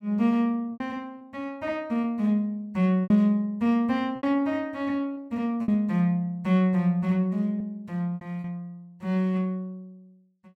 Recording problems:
lost packets; 6% of the sound replaced, filled with repeated pitch periods

